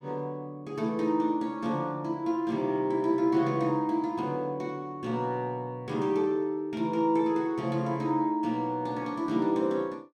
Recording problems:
none

